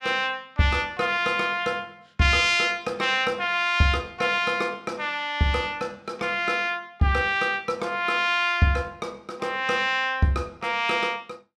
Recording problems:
none

